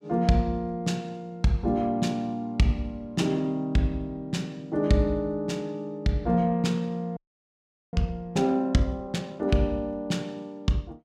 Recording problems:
frozen audio; at 7 s for 1 s

